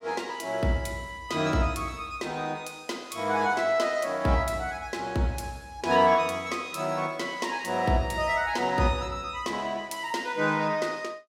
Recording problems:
none

